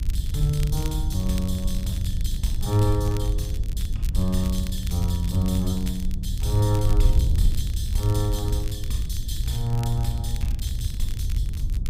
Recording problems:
wind on the microphone; below 76 Hz, SNR 0 dB
crackle; vinyl, SNR 17 dB

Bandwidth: 15.5 kHz